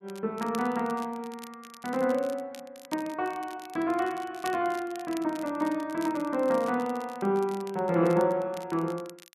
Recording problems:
crackling; vinyl, SNR 20 dB

